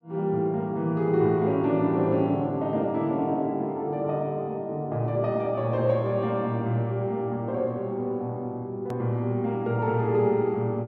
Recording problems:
hard cut with a click; at 9 s

